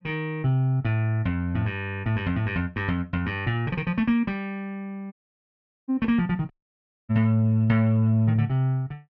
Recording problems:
audio cutting out; at 5 s for 1 s and at 6.5 s for 0.5 s

